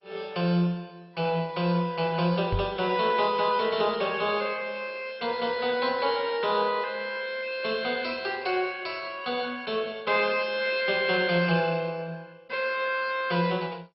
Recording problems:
lossy compression; MP2, log-spectral distance 4 dB, nothing above 4.6 kHz
microphone thump; at 2.5 s; peak +1 dB vs average level

